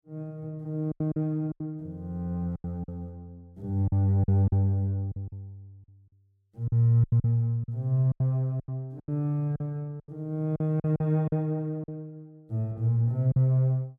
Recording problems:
lost packets; 10% of the sound replaced, filled with silence

